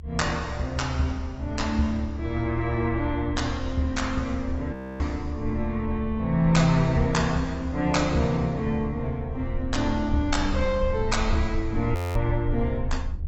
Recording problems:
lossy codec; AAC, log-spectral distance 2 dB, nothing above 18.9 kHz
rumble; below 76 Hz, SNR 8 dB
frozen audio; at 4.5 s and at 12 s

